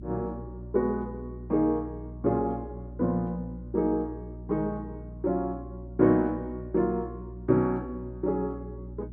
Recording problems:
electrical hum; 60 Hz, harmonics up to 360 Hz, SNR 13 dB

